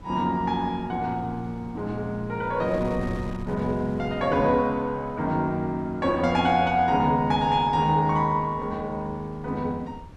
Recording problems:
wind on the microphone; below 270 Hz, SNR 17 dB

